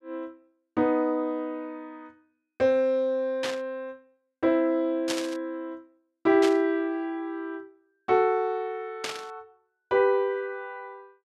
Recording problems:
burst of static; 4 times, first at 3.5 s; peak 0 dB vs average level

